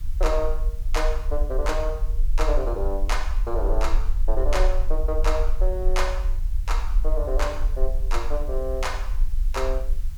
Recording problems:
background hiss; slope 0 dB per octave, SNR 24 dB
low-frequency rumble; below 40 Hz, strongest tone 20 Hz, SNR -2 dB

